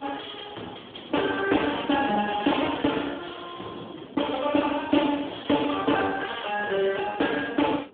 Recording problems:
phone line; 220 Hz to 3.5 kHz, Speex
wind on the microphone; below 520 Hz, SNR 19 dB

